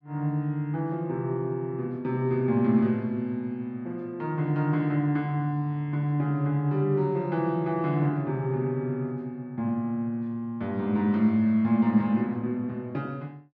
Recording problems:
none

